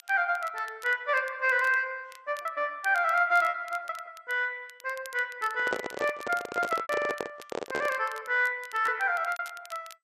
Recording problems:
lossy codec; MP2, log-spectral distance 3 dB
crackling; vinyl, SNR 22 dB
lost packets; 5% of the sound replaced, filled with repeated pitch periods
microphone handling noise; from 5.5 to 8 s; peak +1 dB vs average level

